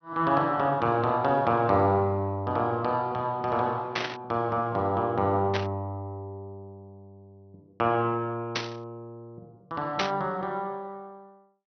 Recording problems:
treble missing; nothing above 6.1 kHz
static burst; 4 times, first at 4 s; peak +3 dB vs average level

